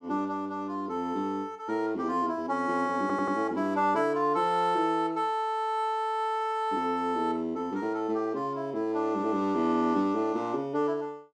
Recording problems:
stutter; at 3 s

